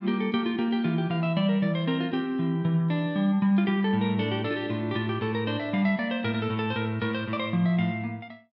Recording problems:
none

